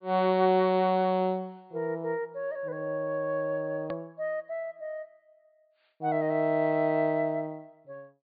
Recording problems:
treble cut off; nothing above 4.7 kHz
hard cut with a click; at 4 s

